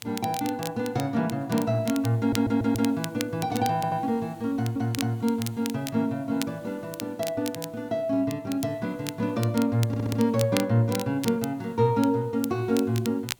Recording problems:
hiss; SNR 29 dB
crackling; vinyl, SNR 13 dB
stutter; 4 times, first at 2 s

